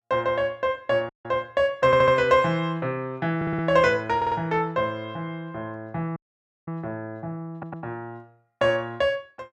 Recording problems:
audio cutting out; at 1 s and at 6 s for 0.5 s
audio stuttering; 4 times, first at 2 s

